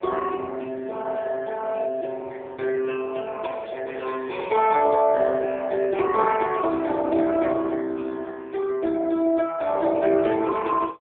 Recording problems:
telephone audio; 280 Hz to 3.4 kHz, AMR-NB

